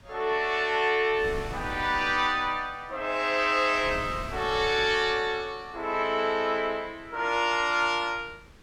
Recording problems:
wind on the microphone; below 600 Hz, SNR 19 dB

